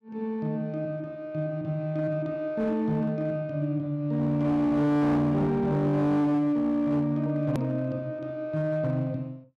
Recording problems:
distortion; hard clipping, signal-to-distortion ratio 11 dB
click at an edit; at 7.5 s

